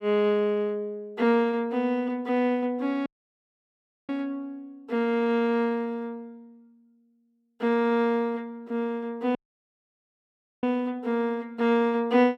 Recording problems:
audio cutting out; at 3 s for 1 s and at 9.5 s for 1.5 s

